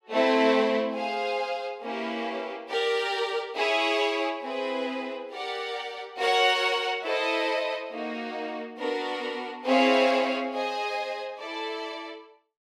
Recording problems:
none

